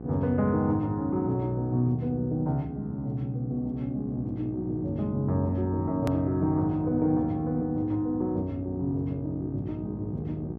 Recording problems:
electrical hum; 60 Hz, harmonics up to 900 Hz, SNR 12 dB
hard cut with a click; at 6 s

